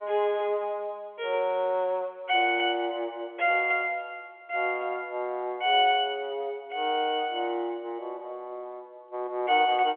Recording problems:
phone line; 280 Hz to 3.4 kHz, G.711

